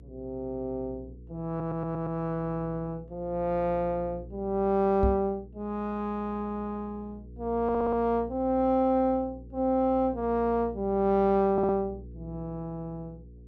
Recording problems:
hum; 60 Hz, harmonics up to 480 Hz, SNR 18 dB
stutter; at 1.5 s, at 7.5 s and at 12 s
knock on the microphone; at 5 s; peak +4 dB vs average level

